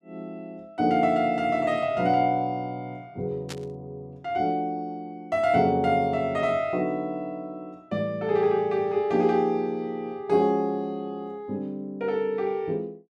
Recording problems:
burst of static; at 3.5 s; peak -7 dB vs average level

